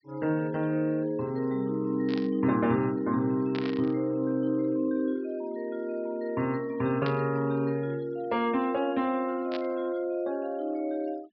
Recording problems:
low-pass filter; nothing above 5.5 kHz
denoising artefacts; signal-to-artefact ratio 26 dB
static burst; 4 times, first at 2 s; peak -6 dB vs average level

